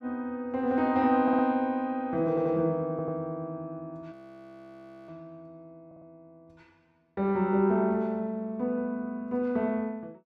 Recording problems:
audio stuttering; 4 times, first at 1 s
frozen audio; at 4 s for 1 s

